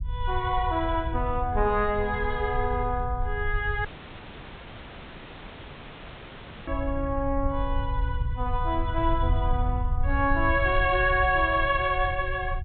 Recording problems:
low-pass filter; nothing above 4 kHz
rumble; below 78 Hz, SNR 5 dB
audio cutting out; at 4 s for 3 s

